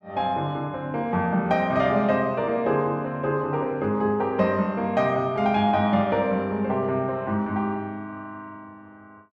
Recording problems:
none

